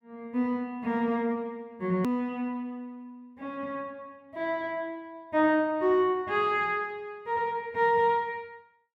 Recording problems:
hard cut with a click; at 2 s

